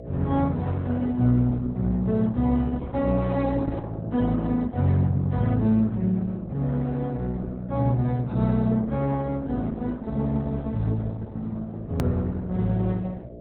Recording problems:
lossy codec; Opus, log-spectral distance 2 dB, nothing above 19.5 kHz
mains hum; 60 Hz, harmonics up to 660 Hz, SNR 17 dB
hard cut with a click; at 12 s

